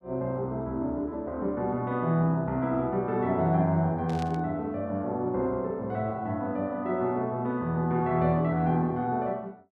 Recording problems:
static burst; at 4 s; peak -11 dB vs average level

